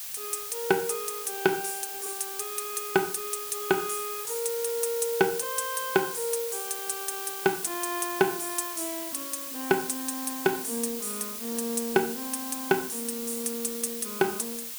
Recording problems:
background hiss; slope +3 dB per octave, SNR 4 dB

